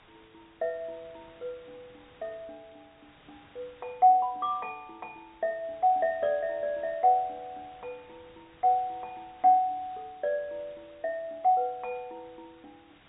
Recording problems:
treble missing; nothing above 4 kHz
hiss; SNR 28 dB

